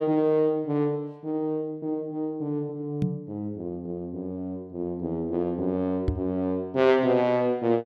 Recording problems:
microphone bump; at 3 s and at 6 s; peak +5 dB vs average level

